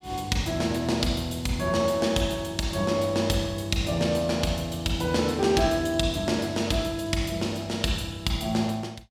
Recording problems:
none

